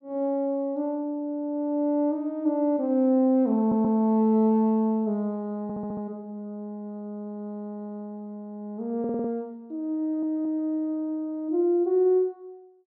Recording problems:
audio stuttering; 4 times, first at 3.5 s

